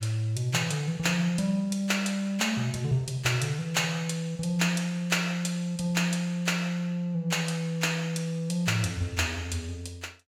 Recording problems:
none

